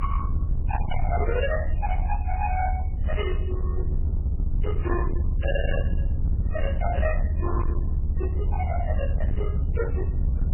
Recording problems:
lossy compression; MP3, log-spectral distance 2 dB, nothing above 2.5 kHz
distorted audio; hard clipping, uneven, signal-to-distortion ratio 8 dB
rumble; below 80 Hz, SNR -4 dB

